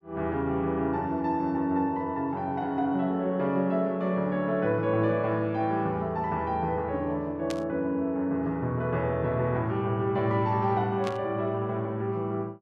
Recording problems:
burst of static; at 7.5 s and at 11 s; peak -6 dB vs average level

